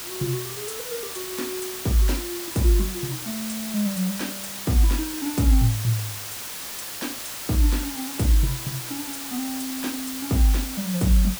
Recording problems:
background hiss; slope 0 dB per octave, SNR 5 dB

